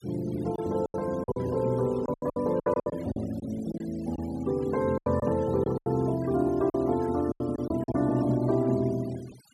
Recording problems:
noise reduction artefacts; signal-to-artefact ratio 22 dB
lost packets; 11% of the sound replaced, filled with silence

